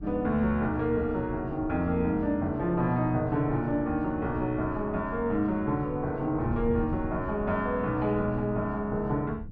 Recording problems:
wind noise; below 140 Hz, SNR 13 dB

